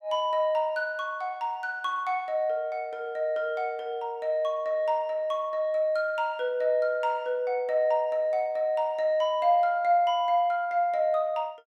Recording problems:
none

